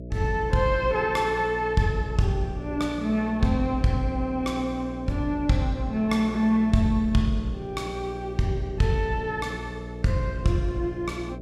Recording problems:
electrical hum; 60 Hz, harmonics up to 660 Hz, SNR 12 dB

